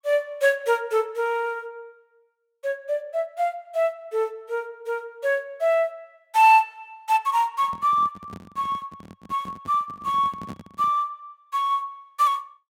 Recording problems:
handling noise; from 7.5 to 11 s; peak -8 dB vs average level

